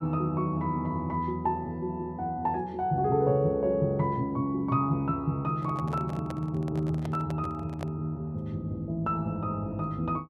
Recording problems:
microphone handling noise; from 5.5 to 8 s; peak -6 dB vs average level

